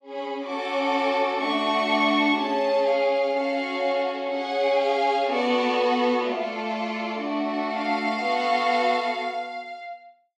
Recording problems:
none

